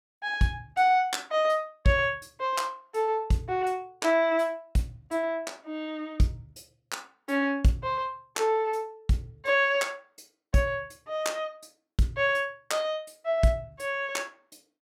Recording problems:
none

